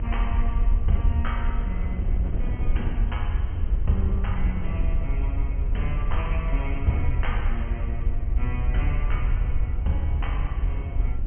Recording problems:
treble missing; nothing above 3.2 kHz
mains hum; 50 Hz, harmonics up to 400 Hz, SNR 25 dB
background hiss; SNR 46 dB
low-frequency rumble; below 62 Hz, SNR -5 dB
wind on the microphone; below 150 Hz, SNR 4 dB

